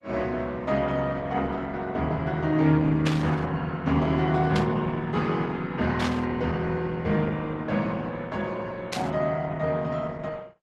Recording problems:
lossy codec; Opus, log-spectral distance 3 dB
static burst; 4 times, first at 3 s; peak +1 dB vs average level

